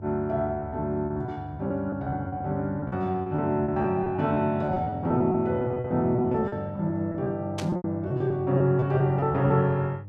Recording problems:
electrical hum; 50 Hz, harmonics up to 500 Hz, SNR 14 dB
packet loss; 13% of the sound replaced, filled with repeated pitch periods
static burst; at 7.5 s; peak -4 dB vs average level

